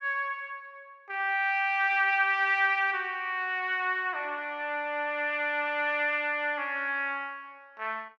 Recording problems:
none

